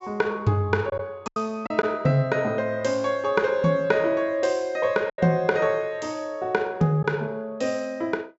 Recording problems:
treble cut off; nothing above 8 kHz
lost packets; 3% of the sound replaced, filled with silence

